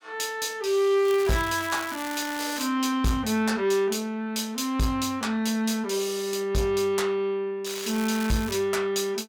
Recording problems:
distortion; soft clipping, signal-to-distortion ratio 11 dB
crackle; from 1 to 2.5 s and at 7.5 s; loose cable, SNR 12 dB

